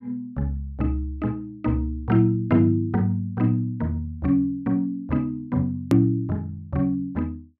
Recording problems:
edit click; at 6 s

